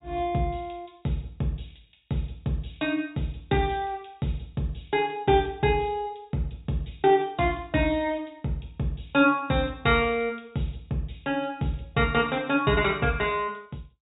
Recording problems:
low-pass filter; nothing above 4 kHz

